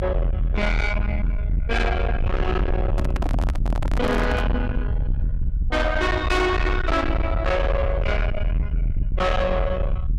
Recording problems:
distorted audio; soft clipping, signal-to-distortion ratio 6 dB
low-frequency rumble; below 110 Hz, strongest tone 40 Hz, SNR 1 dB
handling noise; from 3 to 4.5 s; peak +2 dB vs average level

